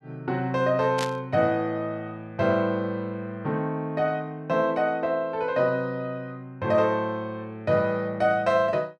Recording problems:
static burst; at 1 s; peak -3 dB vs average level

